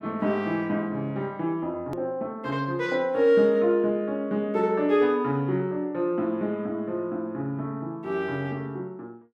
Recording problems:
edit click; at 2 s

